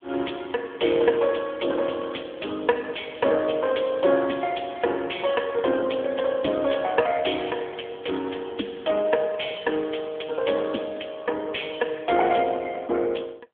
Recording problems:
phone line; 220 Hz to 3.5 kHz, AMR-NB

